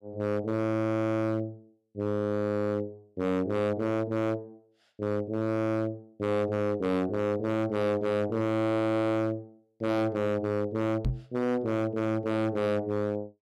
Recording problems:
distortion; hard clipping, signal-to-distortion ratio 6 dB
microphone bump; at 11 s; peak +3 dB vs average level

